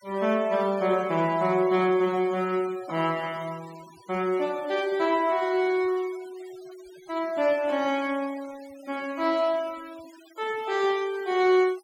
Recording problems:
noise reduction artefacts; signal-to-artefact ratio 21 dB

